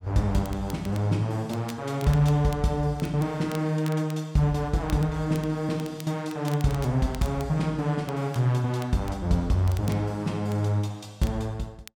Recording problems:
crackling; vinyl, SNR 21 dB

